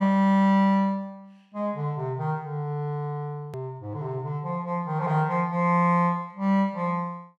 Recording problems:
hard cut with a click; at 3.5 s

